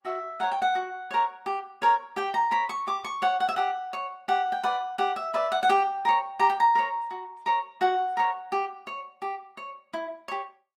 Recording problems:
lossy codec; Opus, log-spectral distance 2 dB

